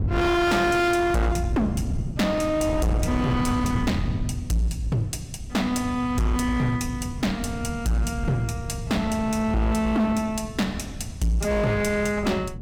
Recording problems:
distorted audio; hard clipping, signal-to-distortion ratio 6 dB
wind on the microphone; below 170 Hz, SNR 8 dB

